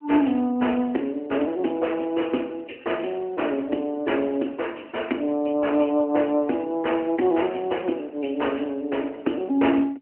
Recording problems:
telephone audio; 220 Hz to 3.1 kHz, AMR-NB

